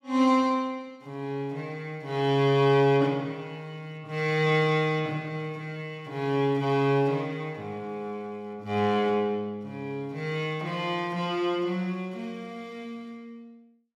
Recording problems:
none

